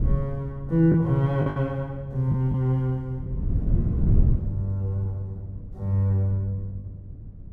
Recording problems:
wind noise; below 130 Hz, SNR 4 dB
lost packets; 4% of the sound replaced, filled with the last packet

